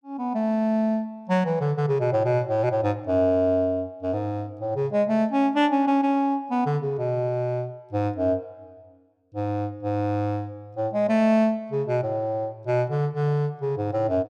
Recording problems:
none

